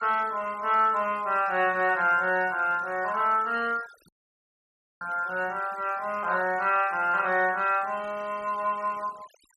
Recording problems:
noise reduction artefacts; signal-to-artefact ratio 23 dB
dropout; at 4 s for 1 s

